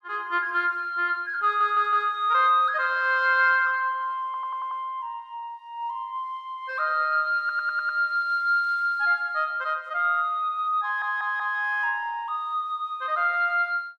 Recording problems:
audio stuttering; 4 times, first at 1.5 s

